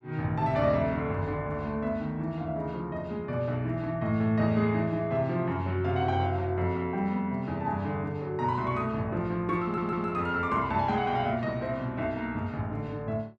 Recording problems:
audio stuttering; at 9.5 s

